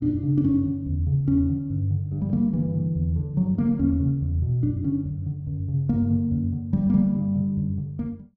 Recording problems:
none

